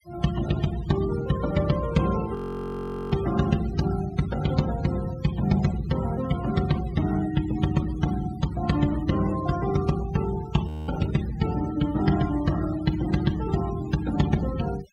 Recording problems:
denoising artefacts; signal-to-artefact ratio 15 dB
frozen audio; at 2.5 s for 1 s and at 11 s

